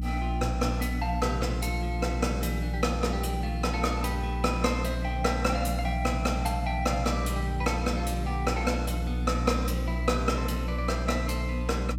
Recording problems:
hum; 60 Hz, harmonics up to 300 Hz, SNR 1 dB

